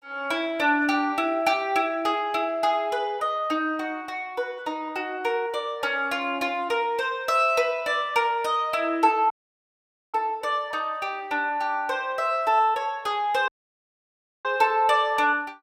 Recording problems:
dropout; at 9.5 s for 1 s and at 13 s for 1 s

